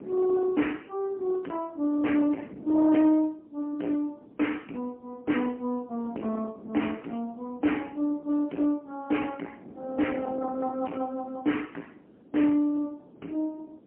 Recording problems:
phone line; 190 Hz to 3 kHz, AMR-NB, then MP3
distorted audio; soft clipping, signal-to-distortion ratio 7 dB
wind noise; below 540 Hz, SNR 17 dB

